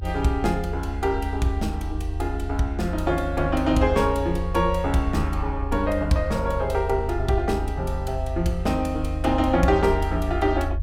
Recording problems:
rumble; below 80 Hz, SNR 6 dB

